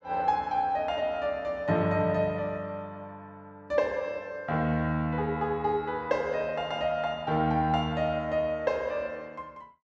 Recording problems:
none

